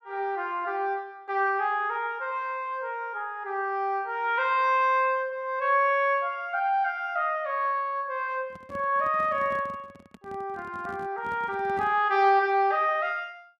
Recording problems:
microphone handling noise; from 8.5 to 12 s; peak -11 dB vs average level

